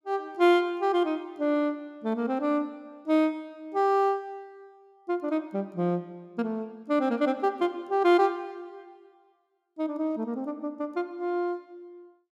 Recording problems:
none

